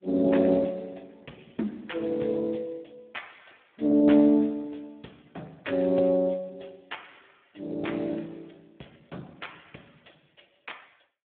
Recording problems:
telephone audio; 110 Hz to 3.4 kHz, Speex

